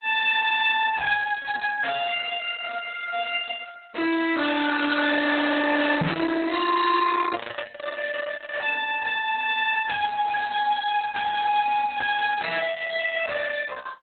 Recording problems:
codec artefacts; Opus, log-spectral distance 5 dB, nothing above 3.6 kHz
distorted audio; soft clipping, signal-to-distortion ratio 6 dB
knock on the microphone; at 6 s; peak +4 dB vs average level

